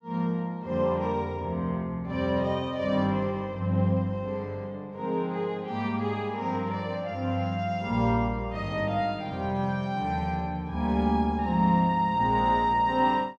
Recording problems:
none

